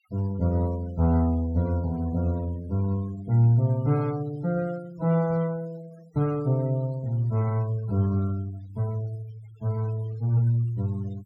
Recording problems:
noise reduction artefacts; signal-to-artefact ratio 25 dB

